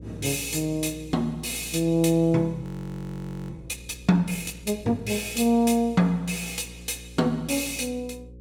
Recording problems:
hum; 60 Hz, harmonics up to 540 Hz, SNR 19 dB
audio freezing; at 2.5 s for 1 s

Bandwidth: 17 kHz